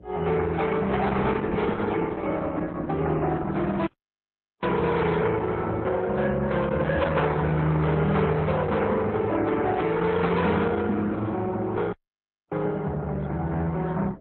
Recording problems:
lossy compression; MP3, then Opus, log-spectral distance 3 dB, nothing above 3.9 kHz
distortion; soft clipping, signal-to-distortion ratio 11 dB
electrical hum; 60 Hz, harmonics up to 660 Hz, SNR 24 dB
audio cutting out; at 4 s for 1 s and at 12 s for 0.5 s

